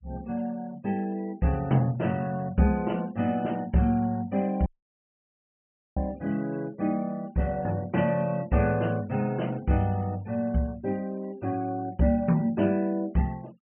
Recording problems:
treble missing; nothing above 3.1 kHz
noise reduction artefacts; signal-to-artefact ratio 27 dB
dropout; at 4.5 s for 1.5 s

